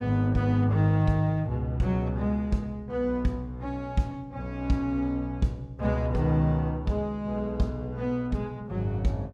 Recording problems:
none

